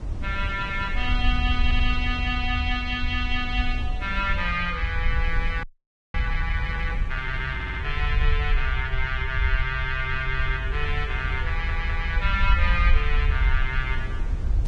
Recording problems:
codec artefacts; Vorbis, log-spectral distance 2 dB
rumble; below 62 Hz, SNR 1 dB
wind noise; below 210 Hz, SNR 12 dB
stutter; at 1.5 s, at 7.5 s and at 11 s
audio freezing; at 5.5 s for 0.5 s

